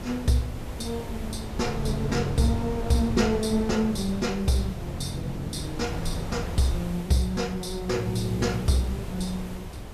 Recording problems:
hiss; SNR 18 dB
wind noise; below 270 Hz, SNR 8 dB

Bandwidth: 14.5 kHz